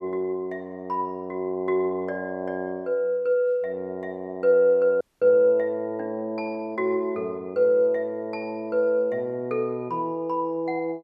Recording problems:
dropout; at 5 s

